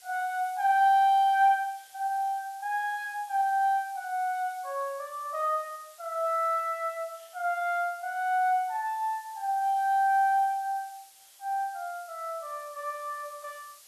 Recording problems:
background hiss; slope +3 dB per octave, SNR 23 dB

